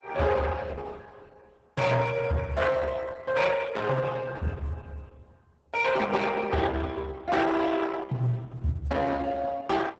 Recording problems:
lossy compression; Opus, then Opus, log-spectral distance 4 dB, nothing above 8 kHz
distorted audio; soft clipping, signal-to-distortion ratio 10 dB

